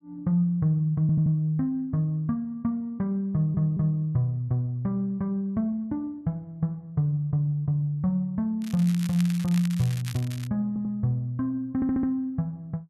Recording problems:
audio stuttering; 4 times, first at 1 s
crackling; from 8.5 to 10 s; loose cable, SNR 16 dB

